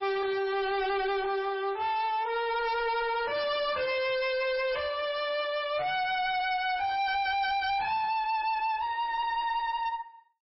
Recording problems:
lossy codec; MP3, log-spectral distance 3 dB, nothing above 5.3 kHz
distorted audio; hard clipping, uneven, signal-to-distortion ratio 7 dB

